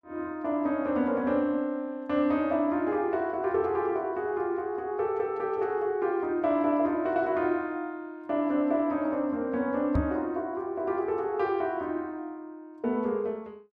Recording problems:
knock on the microphone; at 10 s; peak +4 dB vs average level

